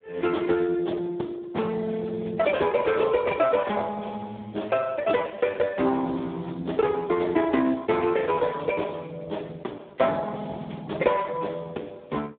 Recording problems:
telephone audio; 220 Hz to 3.5 kHz, Speex

